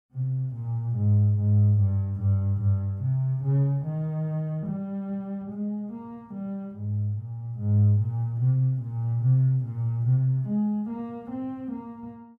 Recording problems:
none

